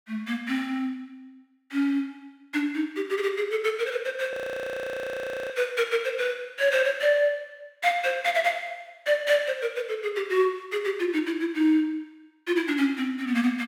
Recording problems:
frozen audio; at 4.5 s for 1 s

